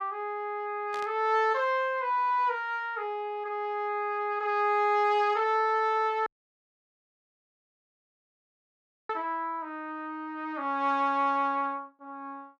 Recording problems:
burst of static; at 1 s; peak -10 dB vs average level
dropout; at 6.5 s for 3 s

